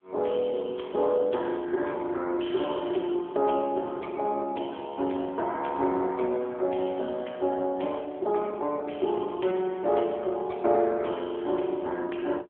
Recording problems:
telephone audio; 260 Hz to 3.4 kHz, AMR-NB

